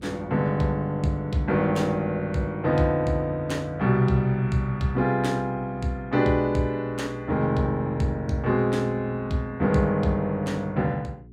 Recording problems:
electrical hum; 60 Hz, harmonics up to 420 Hz, SNR 22 dB

